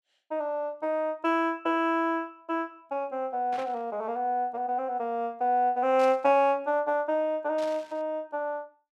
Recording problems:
burst of static; at 3.5 s, at 6 s and at 7.5 s; peak -11 dB vs average level

